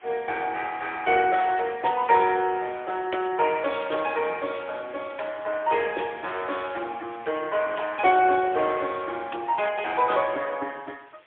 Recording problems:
phone line; 280 Hz to 3.4 kHz, AMR-NB, then MP3
background hiss; SNR 27 dB

